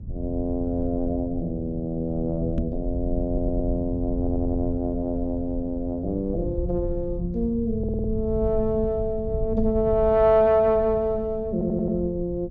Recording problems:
rumble; below 100 Hz, SNR 8 dB
microphone thump; at 2.5 s; peak +2 dB vs average level
stutter; 4 times, first at 3.5 s

